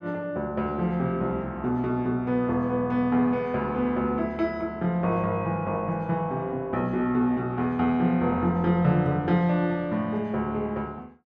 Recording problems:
none

